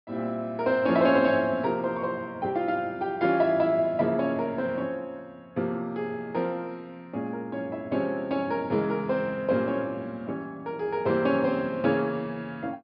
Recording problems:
low-pass filter; nothing above 5.5 kHz

